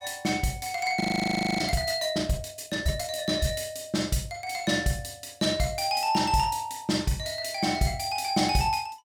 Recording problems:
audio freezing; at 1 s for 0.5 s

